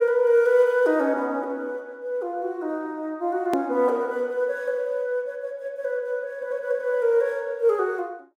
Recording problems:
click at an edit; at 3.5 s

